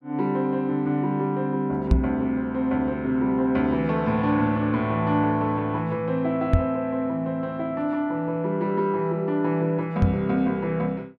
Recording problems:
microphone thump; at 2 s, at 6.5 s and at 10 s; peak +8 dB vs average level

